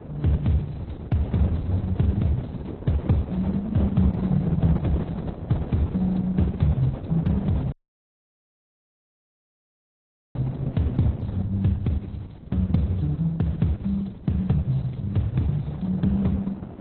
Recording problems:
lossy compression; Opus, then AAC, log-spectral distance 4 dB
electrical hum; 50 Hz, harmonics up to 350 Hz, SNR 28 dB
wind on the microphone; below 390 Hz, SNR 10 dB
dropout; at 7.5 s for 2.5 s

